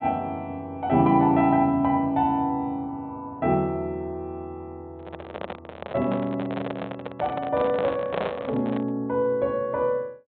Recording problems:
treble missing; nothing above 4 kHz
microphone handling noise; from 5 to 9 s; peak +1 dB vs average level

